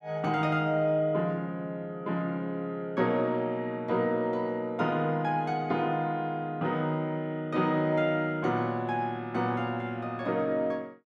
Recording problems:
none

